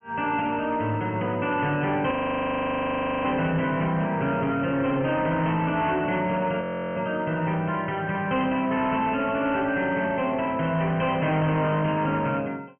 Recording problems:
treble missing; nothing above 3.2 kHz
distorted audio; soft clipping, signal-to-distortion ratio 11 dB
frozen audio; at 2 s for 1 s and at 6.5 s

